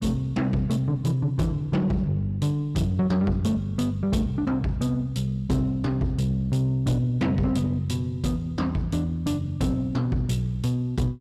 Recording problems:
distorted audio; soft clipping, signal-to-distortion ratio 12 dB

